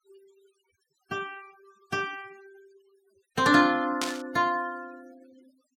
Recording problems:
noise reduction artefacts; signal-to-artefact ratio 24 dB
burst of static; at 4 s; peak 0 dB vs average level

